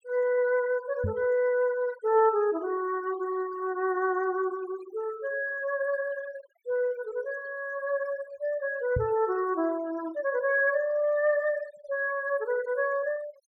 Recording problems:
denoising artefacts; signal-to-artefact ratio 20 dB
microphone thump; at 1 s and at 9 s; peak +2 dB vs average level

